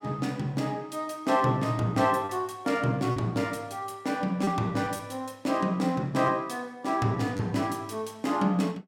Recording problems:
packet loss; 1.9% of the sound replaced, filled with repeated pitch periods

